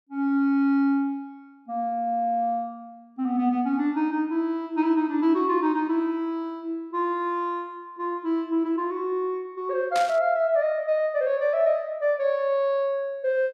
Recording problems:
burst of static; at 10 s; peak -4 dB vs average level

